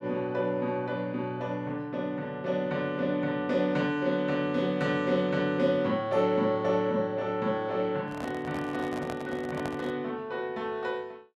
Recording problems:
handling noise; from 8 to 10 s; peak -4 dB vs average level

